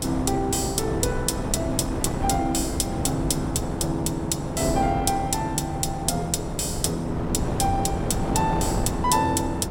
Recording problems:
wind on the microphone; below 470 Hz, SNR 4 dB

